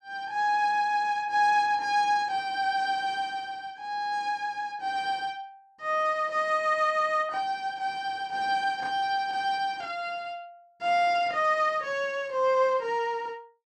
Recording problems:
none

